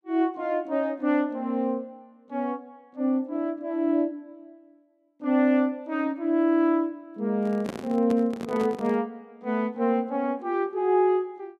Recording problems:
handling noise; from 7.5 to 9 s; peak -2 dB vs average level

